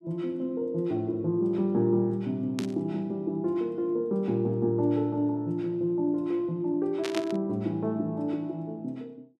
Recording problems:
static burst; at 2.5 s and at 7 s; peak -2 dB vs average level

